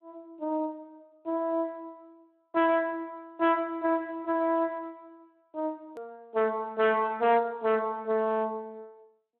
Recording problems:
telephone audio; 260 Hz to 3.9 kHz, Speex
distortion; hard clipping, signal-to-distortion ratio 12 dB
edit click; at 6 s

